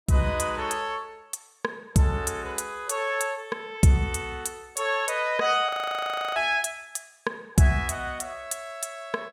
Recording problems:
frozen audio; at 5.5 s for 0.5 s

